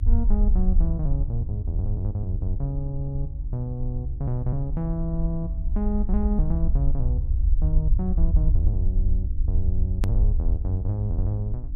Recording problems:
hum; 50 Hz, harmonics up to 300 Hz, SNR 17 dB
low-frequency rumble; below 58 Hz, SNR -2 dB
hard cut with a click; at 10 s

